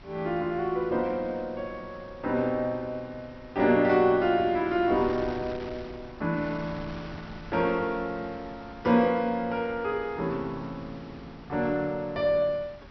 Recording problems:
treble cut off; nothing above 5.8 kHz
wind on the microphone; below 1.2 kHz, SNR 19 dB

